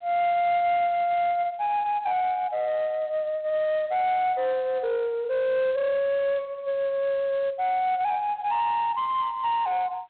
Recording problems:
telephone audio; 990 Hz to 2.1 kHz, G.726
distortion; soft clipping, signal-to-distortion ratio 10 dB

